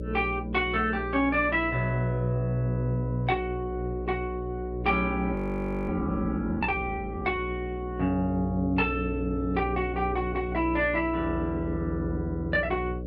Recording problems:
hum; 60 Hz, harmonics up to 600 Hz, SNR 7 dB
frozen audio; at 5.5 s for 0.5 s

